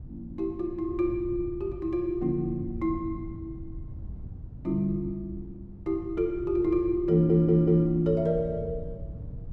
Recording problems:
wind noise; below 120 Hz, SNR 14 dB
audio stuttering; at 7 s

